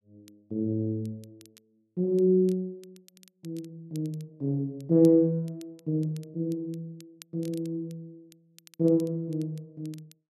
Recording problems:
crackling; vinyl, SNR 28 dB

